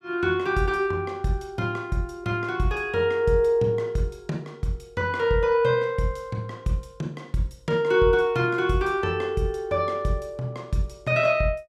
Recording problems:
none

